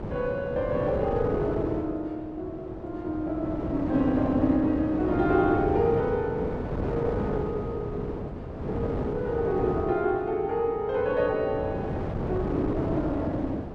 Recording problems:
wind on the microphone; below 510 Hz, SNR 4 dB

